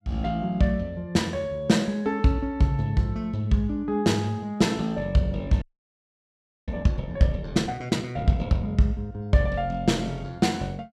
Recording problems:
audio freezing; at 5.5 s for 1 s

